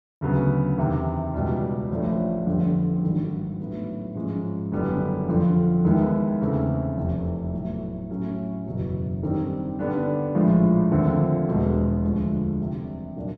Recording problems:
none

